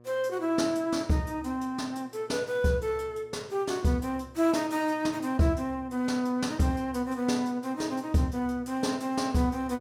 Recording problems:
hum; 60 Hz, harmonics up to 1.3 kHz, SNR 26 dB

